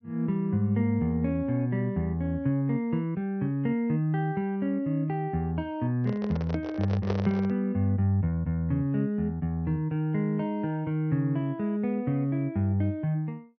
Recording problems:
low-pass filter; nothing above 6.1 kHz
handling noise; from 6 to 7.5 s; peak 0 dB vs average level

